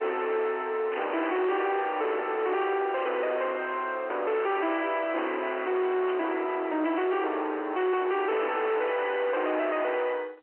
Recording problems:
phone line; 280 Hz to 3.1 kHz, G.711
distortion; soft clipping, signal-to-distortion ratio 6 dB
burst of static; at 1 s, at 3 s and at 6 s; peak -7 dB vs average level

